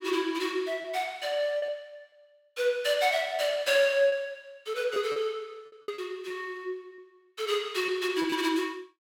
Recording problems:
lost packets; 5% of the sound replaced, filled with repeated pitch periods

